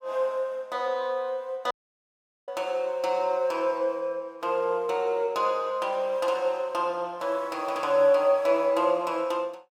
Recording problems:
dropout; at 1.5 s for 1 s

